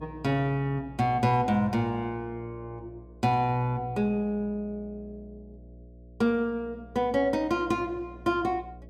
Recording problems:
electrical hum; 60 Hz, harmonics up to 660 Hz, SNR 20 dB

